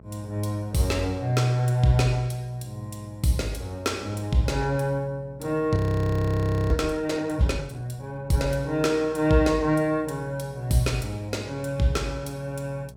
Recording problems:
electrical hum; 60 Hz, harmonics up to 900 Hz, SNR 22 dB
frozen audio; at 6 s for 1 s

